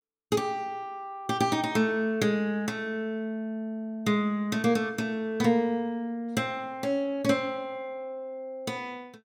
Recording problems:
none

